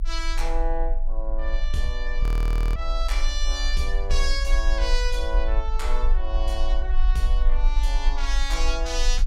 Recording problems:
rumble; below 42 Hz, strongest tone 22 Hz, SNR -4 dB
frozen audio; at 2 s for 0.5 s

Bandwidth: 16 kHz